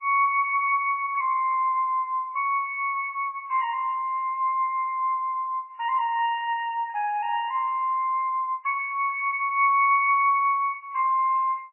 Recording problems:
lossy compression; MP3, log-spectral distance 2 dB

